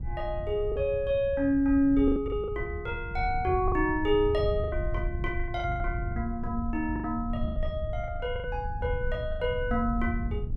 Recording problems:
wind on the microphone; below 92 Hz, SNR 6 dB
packet loss; 9% of the sound replaced, filled with the last packet

